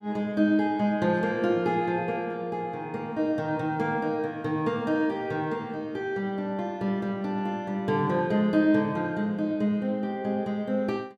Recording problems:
none

